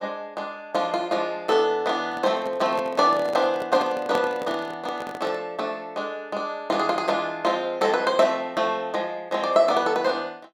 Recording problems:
handling noise; from 2 to 5.5 s; peak -1 dB vs average level

